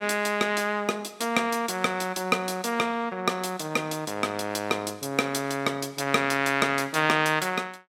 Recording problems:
none

